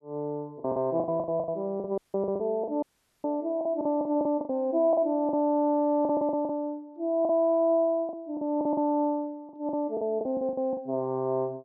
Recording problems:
lost packets; 13% of the sound replaced, filled with the last packet
dropout; at 2 s and at 3 s

